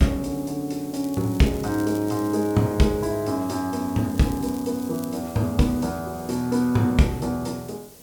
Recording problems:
background hiss; SNR 19 dB
crackle; from 1 to 2.5 s and from 4 to 5 s; loose cable, SNR 22 dB

